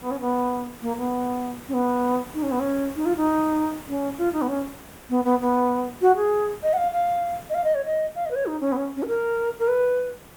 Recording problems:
hiss; slope -5 dB per octave, SNR 19 dB

